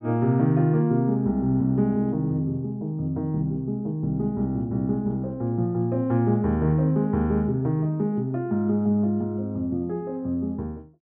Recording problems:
none

